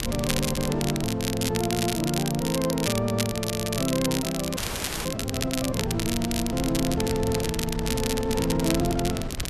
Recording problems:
wind on the microphone; below 210 Hz, SNR 9 dB
crackle; vinyl, SNR 4 dB
frozen audio; at 4.5 s

